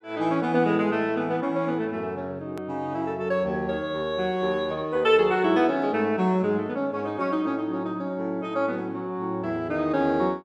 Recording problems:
click at an edit; at 2.5 s

